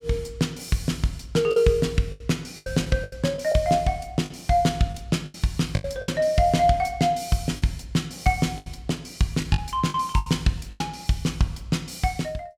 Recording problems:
packet loss; 8% of the sound replaced, filled with the last packet

